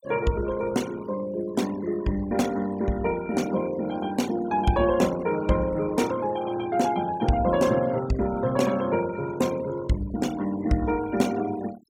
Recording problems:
denoising artefacts; signal-to-artefact ratio 17 dB

